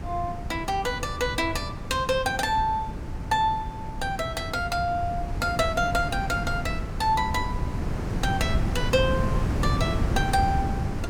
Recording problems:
wind on the microphone; below 210 Hz, SNR 3 dB

